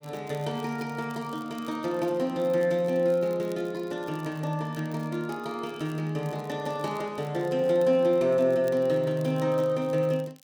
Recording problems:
crackling; vinyl, SNR 27 dB

